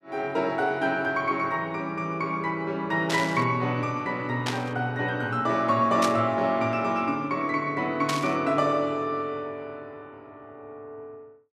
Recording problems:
burst of static; 4 times, first at 3 s; peak 0 dB vs average level

